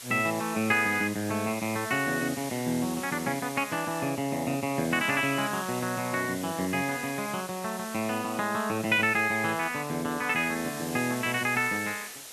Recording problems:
background hiss; slope 0 dB per octave, SNR 11 dB

